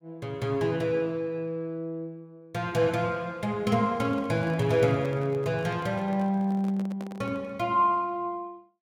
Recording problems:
microphone handling noise; from 4 to 7.5 s; peak -9 dB vs average level

